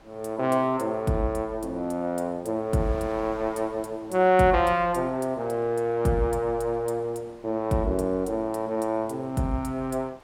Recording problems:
wind noise; below 1.3 kHz, SNR 24 dB

